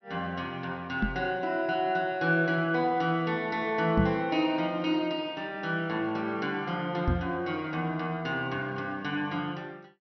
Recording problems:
treble cut off; nothing above 5.7 kHz
knock on the microphone; at 1 s, at 4 s and at 7 s; peak +7 dB vs average level

